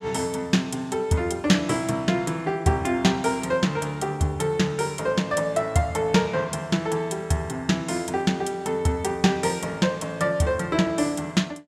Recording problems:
none

